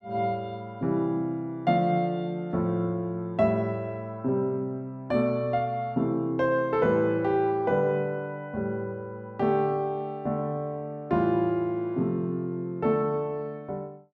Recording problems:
none

